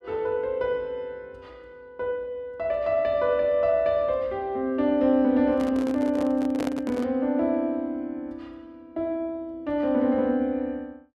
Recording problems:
microphone handling noise; from 5.5 to 7 s; peak -2 dB vs average level

